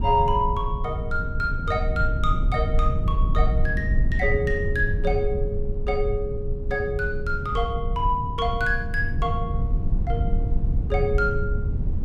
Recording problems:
rumble; below 90 Hz, SNR 0 dB

